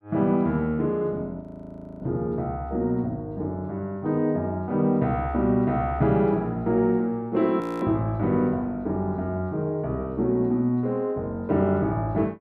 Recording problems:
frozen audio; at 1.5 s for 0.5 s and at 7.5 s

